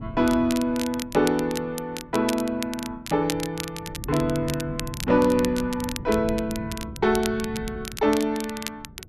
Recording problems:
wind on the microphone; below 190 Hz, SNR 14 dB
crackling; vinyl, SNR 11 dB

